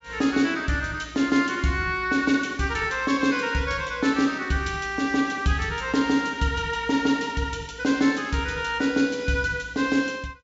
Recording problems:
treble cut off; nothing above 8 kHz

